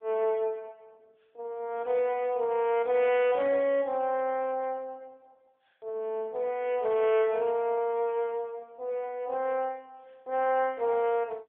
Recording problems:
telephone audio; 300 Hz to 3.3 kHz, AMR-NB

